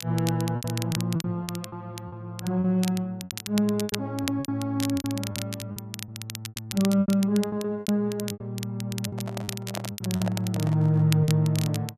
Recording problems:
crackling; vinyl, SNR 11 dB
packet loss; 12% of the sound replaced, filled with repeated pitch periods
microphone handling noise; from 9 to 11 s; peak -2 dB vs average level

